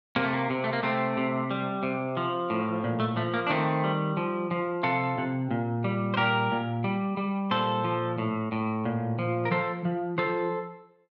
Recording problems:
none

